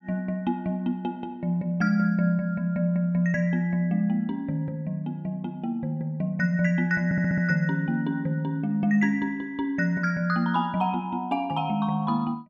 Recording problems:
stutter; at 7 s

